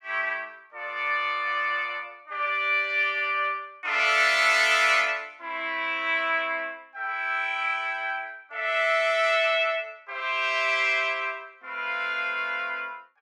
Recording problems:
none

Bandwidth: 16 kHz